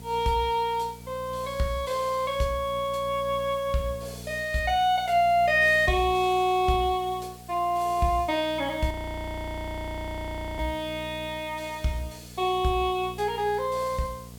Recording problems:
hum; 60 Hz, harmonics up to 960 Hz, SNR 18 dB
hiss; slope +2 dB per octave, SNR 23 dB
frozen audio; at 9 s for 1.5 s

